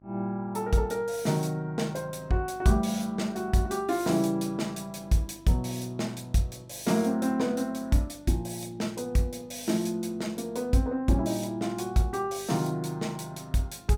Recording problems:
hum; 50 Hz, harmonics up to 1.1 kHz, SNR 25 dB

